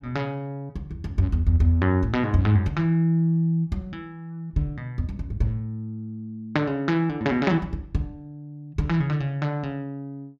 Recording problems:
none

